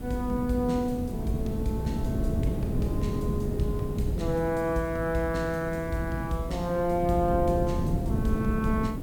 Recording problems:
background hiss; slope -3 dB per octave, SNR 23 dB
wind noise; below 230 Hz, SNR 3 dB

